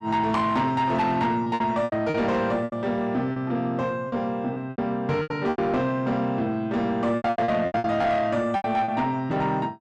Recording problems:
distortion; soft clipping, signal-to-distortion ratio 12 dB
packet loss; 11% of the sound replaced, filled with repeated pitch periods

